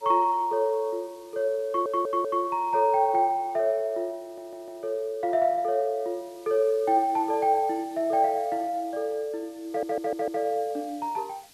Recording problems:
hiss; SNR 27 dB
audio stuttering; at 1.5 s, at 4 s and at 9.5 s

